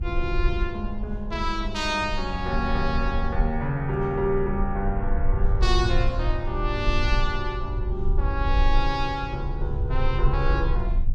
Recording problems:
rumble; below 52 Hz, strongest tone 20 Hz, SNR 1 dB

